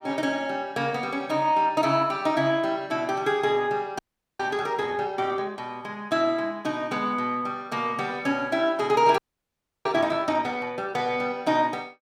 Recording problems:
audio freezing; at 4 s and at 9 s for 0.5 s

